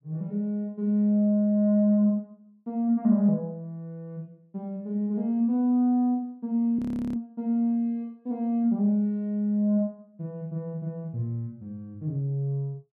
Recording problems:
frozen audio; at 7 s

